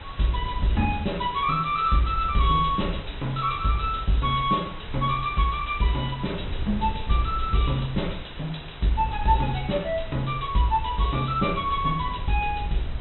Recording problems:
treble cut off; nothing above 4 kHz
background hiss; SNR 17 dB
wind on the microphone; below 84 Hz, SNR 11 dB

